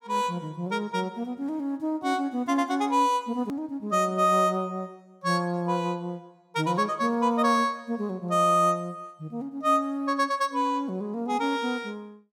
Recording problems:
hard cut with a click; at 3.5 s

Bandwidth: 17.5 kHz